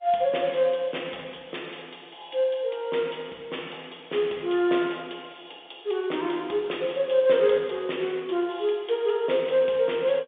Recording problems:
phone line; 260 Hz to 3.6 kHz, G.711

